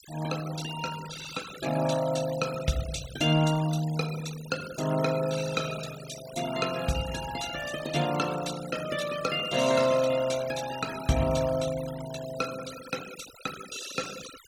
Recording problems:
denoising artefacts; signal-to-artefact ratio 12 dB

